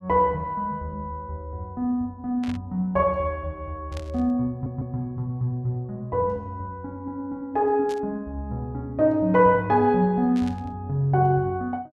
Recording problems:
burst of static; 4 times, first at 2.5 s; peak -12 dB vs average level
stutter; at 4.5 s

